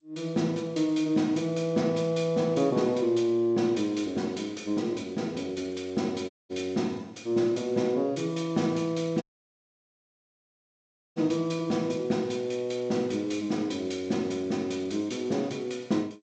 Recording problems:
lossy codec; G.722, log-spectral distance 2 dB, nothing above 7.6 kHz
audio cutting out; at 6.5 s and at 9 s for 2 s

